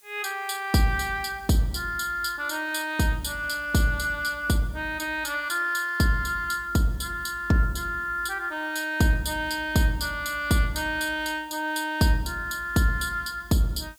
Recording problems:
background hiss; slope +2 dB per octave, SNR 28 dB

